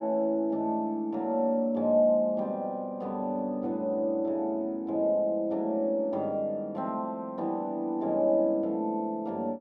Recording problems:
none

